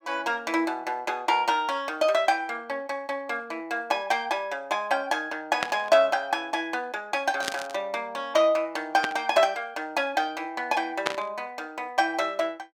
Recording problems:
burst of static; 4 times, first at 5.5 s; peak +4 dB vs average level

